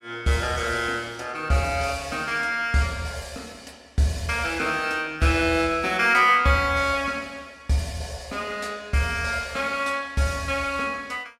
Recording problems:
none

